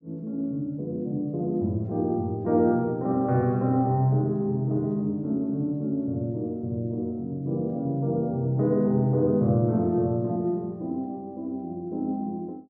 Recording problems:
none

